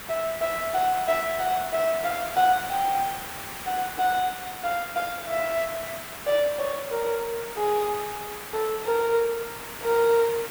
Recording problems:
hiss; SNR 9 dB

